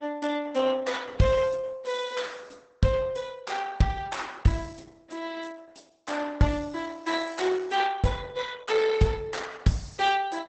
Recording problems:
codec artefacts; Opus, log-spectral distance 5 dB, nothing above 8 kHz

